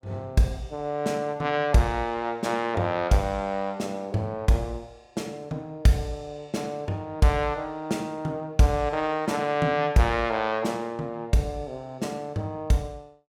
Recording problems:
none

